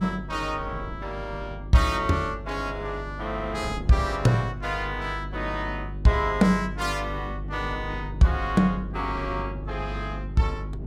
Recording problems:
hum; 50 Hz, harmonics up to 400 Hz, SNR 10 dB
wind on the microphone; below 280 Hz, SNR 18 dB

